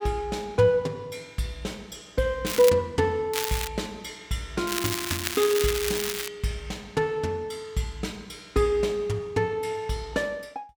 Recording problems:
crackle; at 2.5 s, at 3.5 s and from 4.5 to 6.5 s; loose cable, SNR 3 dB

